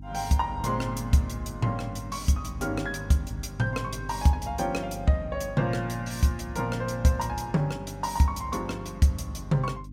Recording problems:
mains hum; 50 Hz, harmonics up to 300 Hz, SNR 13 dB

